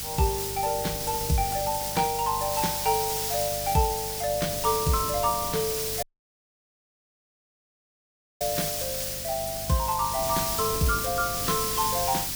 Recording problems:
mains hum; 50 Hz, harmonics up to 400 Hz, SNR 15 dB
hiss; slope +3 dB per octave, SNR 1 dB
wind noise; below 320 Hz, SNR 16 dB
audio cutting out; at 6 s for 2.5 s

